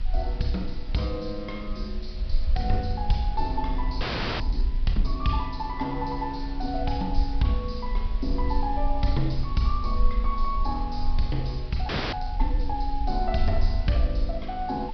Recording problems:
treble missing; nothing above 5.5 kHz
hiss; SNR 20 dB
low-frequency rumble; below 48 Hz, strongest tone 20 Hz, SNR 2 dB
frozen audio; at 4 s and at 12 s

